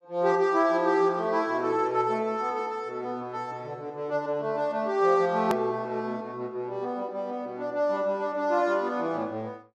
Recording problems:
click at an edit; at 5.5 s

